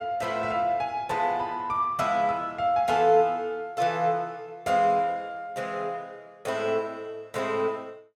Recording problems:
none

